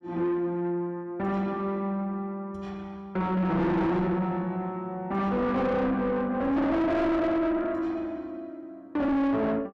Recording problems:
distorted audio; soft clipping, signal-to-distortion ratio 6 dB

